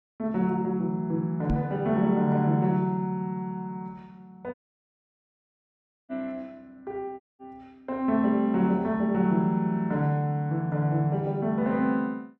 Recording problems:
microphone thump; at 1.5 s; peak +2 dB vs average level
audio cutting out; at 4.5 s for 1.5 s and at 7 s

